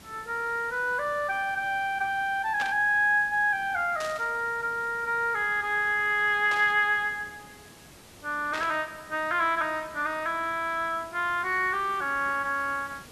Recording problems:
hiss; slope -3 dB per octave, SNR 22 dB
burst of static; 4 times, first at 2.5 s; peak -5 dB vs average level

